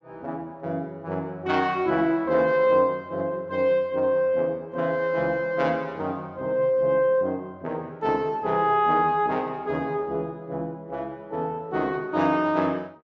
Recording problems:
treble missing; nothing above 8 kHz

